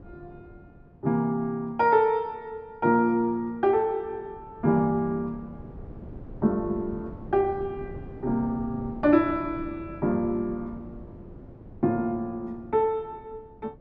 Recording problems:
wind noise; below 290 Hz, SNR 17 dB

